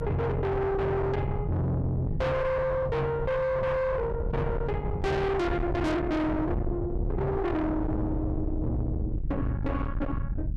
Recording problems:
distorted audio; soft clipping, signal-to-distortion ratio 6 dB
low-frequency rumble; below 310 Hz, SNR 5 dB

